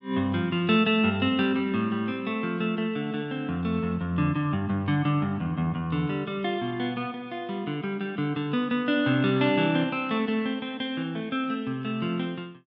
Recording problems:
none

